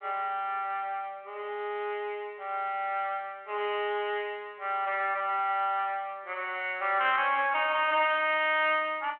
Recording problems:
telephone audio; 320 Hz to 3.3 kHz, G.726

